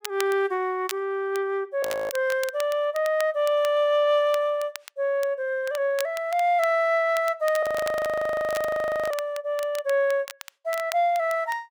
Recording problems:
crackle; vinyl, SNR 17 dB
frozen audio; at 2 s and at 7.5 s for 1.5 s

